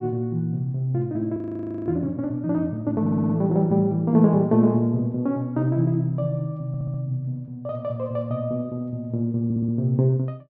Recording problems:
frozen audio; at 1.5 s for 0.5 s
stutter; at 3 s, at 6.5 s and at 9.5 s

